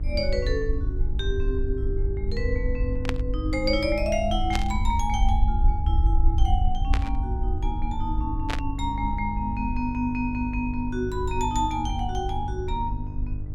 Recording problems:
hum; 50 Hz, harmonics up to 450 Hz, SNR 6 dB
rumble; below 62 Hz, SNR 0 dB
static burst; 4 times, first at 3 s; peak +3 dB vs average level

